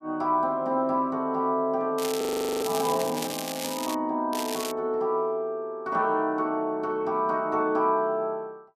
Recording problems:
crackling; from 2 to 4 s and at 4.5 s; loose cable, SNR 8 dB
audio freezing; at 2 s

